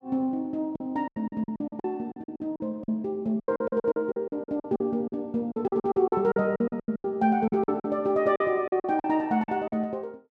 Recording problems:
lost packets; 18% of the sound replaced, filled with silence

